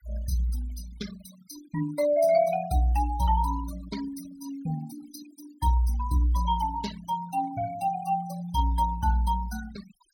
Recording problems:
denoising artefacts; signal-to-artefact ratio 16 dB

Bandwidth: 17 kHz